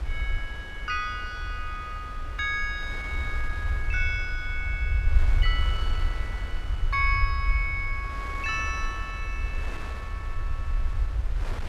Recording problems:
low-frequency rumble; below 64 Hz, SNR 1 dB
wind on the microphone; below 2 kHz, SNR 12 dB

